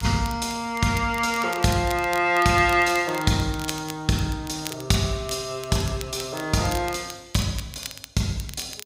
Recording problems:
crackle; vinyl, SNR 15 dB

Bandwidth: 15.5 kHz